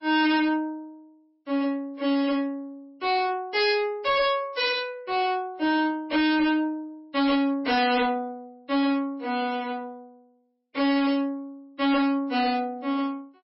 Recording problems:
lossy compression; MP3, log-spectral distance 2 dB, nothing above 5.3 kHz
distortion; hard clipping, signal-to-distortion ratio 8 dB

